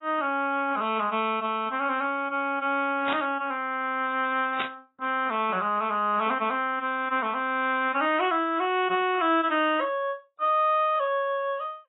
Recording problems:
lossy codec; AAC, log-spectral distance 2 dB, nothing above 3.1 kHz
static burst; at 3 s and at 4.5 s; peak 0 dB vs average level

